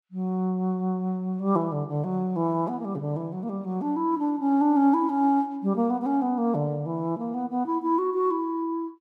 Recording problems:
none

